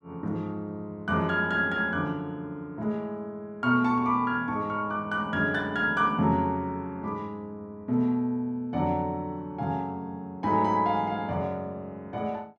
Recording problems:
none

